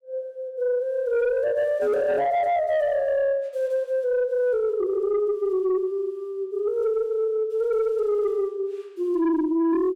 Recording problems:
distortion; soft clipping, signal-to-distortion ratio 12 dB

